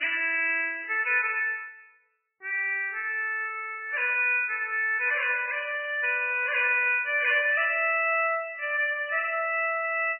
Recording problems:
lossy compression; MP3, then MP3, log-spectral distance 5 dB, nothing above 2.4 kHz

